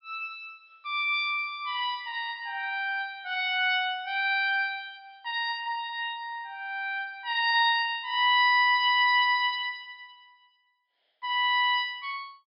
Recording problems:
low-pass filter; nothing above 5.5 kHz

